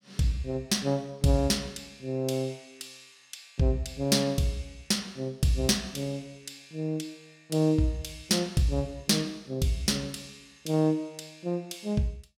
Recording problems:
none

